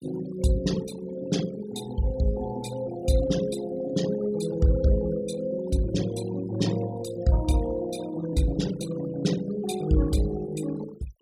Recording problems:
noise reduction artefacts; signal-to-artefact ratio 15 dB

